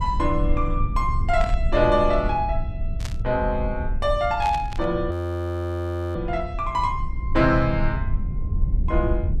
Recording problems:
rumble; below 82 Hz, SNR 4 dB
static burst; at 1.5 s, at 3 s and at 4.5 s; peak -7 dB vs average level
frozen audio; at 5 s for 1 s

